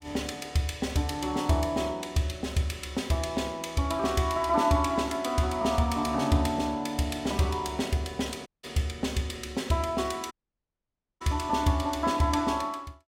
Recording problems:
audio cutting out; at 8.5 s and at 10 s for 1 s

